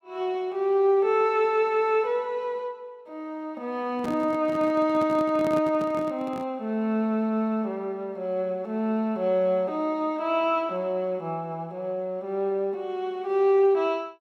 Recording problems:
handling noise; from 4 to 6.5 s; peak -4 dB vs average level

